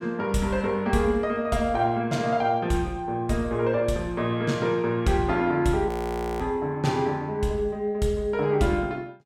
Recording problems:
frozen audio; at 6 s for 0.5 s

